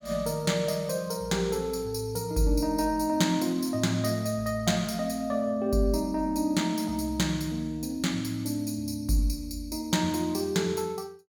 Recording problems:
none

